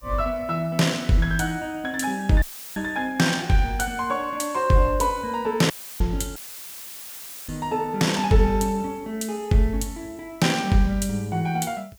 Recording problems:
background hiss; SNR 29 dB
audio cutting out; at 2.5 s, at 5.5 s and at 6.5 s for 1 s; filled with static

